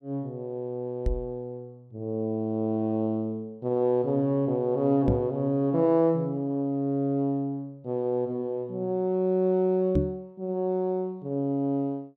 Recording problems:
microphone bump; at 1 s, at 5 s and at 10 s; peak +6 dB vs average level

